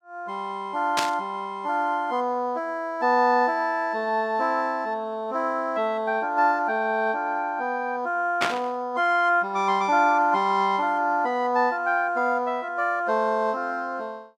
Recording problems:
burst of static; at 1 s and at 8.5 s; peak +3 dB vs average level

